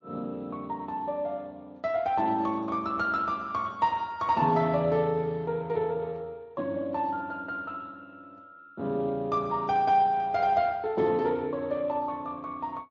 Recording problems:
codec artefacts; Speex, then MP3, log-spectral distance 2 dB

